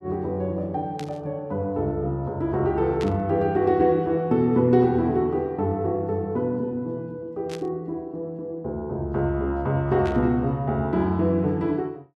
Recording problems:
burst of static; 4 times, first at 1 s; peak -8 dB vs average level

